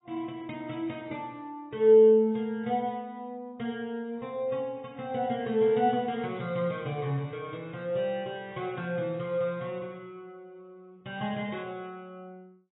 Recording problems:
codec artefacts; AAC, log-spectral distance 2 dB, nothing above 3.7 kHz

